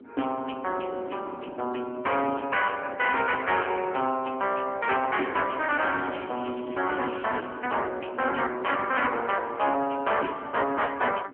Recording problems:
telephone audio; 220 Hz to 3.3 kHz, AMR-NB
distorted audio; hard clipping, signal-to-distortion ratio 11 dB
wind noise; below 450 Hz, SNR 16 dB
crackle; from 5.5 to 7.5 s; loose cable, SNR 22 dB

